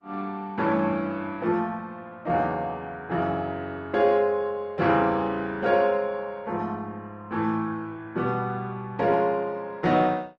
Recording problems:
lossy compression; Opus, log-spectral distance 2 dB

